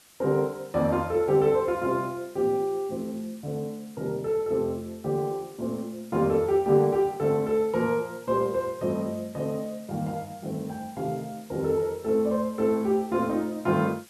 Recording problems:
background hiss; slope 0 dB per octave, SNR 25 dB

